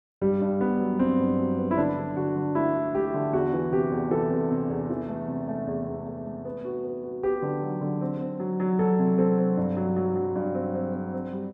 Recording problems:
none

